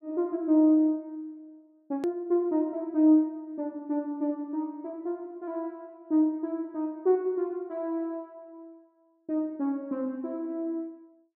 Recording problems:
edit click; at 2 s

